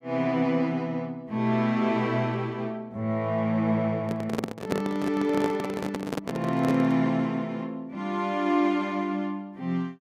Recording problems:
handling noise; from 4 to 7 s; peak +3 dB vs average level

